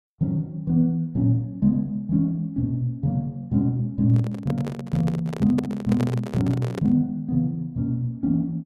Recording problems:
microphone handling noise; from 4 to 7 s; peak -2 dB vs average level

